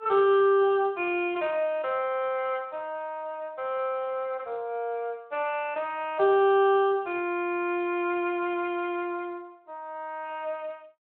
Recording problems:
phone line; 370 Hz to 3.4 kHz, Speex

